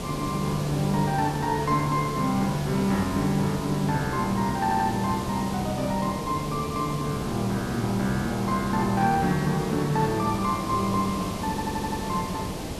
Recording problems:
background hiss; SNR 7 dB
audio stuttering; at 4.5 s and at 12 s

